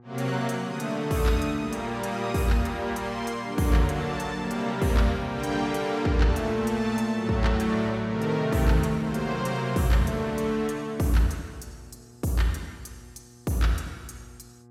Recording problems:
mains hum; 60 Hz, harmonics up to 1.2 kHz, SNR 26 dB

